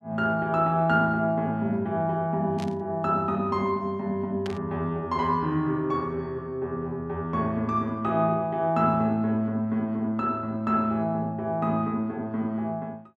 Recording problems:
static burst; at 2.5 s and at 4.5 s; peak -8 dB vs average level

